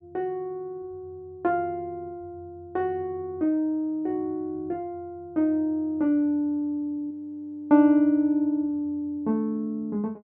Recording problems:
audio freezing; at 7 s for 0.5 s

